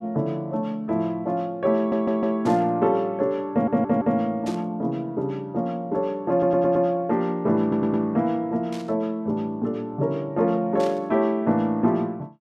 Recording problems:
audio stuttering; 4 times, first at 2 s
burst of static; 4 times, first at 2.5 s; peak -12 dB vs average level

